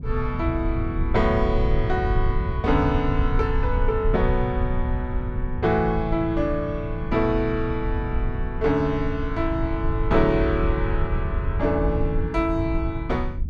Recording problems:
low-frequency rumble; below 88 Hz, SNR 3 dB

